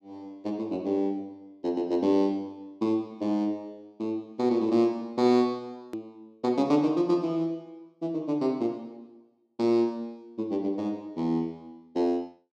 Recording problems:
edit click; at 6 s

